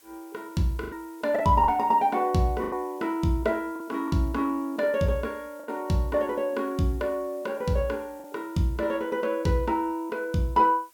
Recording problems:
background hiss; slope 0 dB per octave, SNR 28 dB
packet loss; 4% of the sound replaced, filled with the last packet

